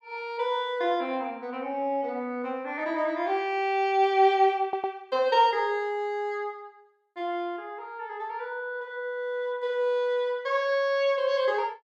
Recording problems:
audio stuttering; at 4.5 s

